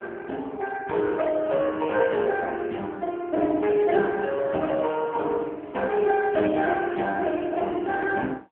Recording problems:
phone line; 220 Hz to 2.8 kHz, AMR-NB

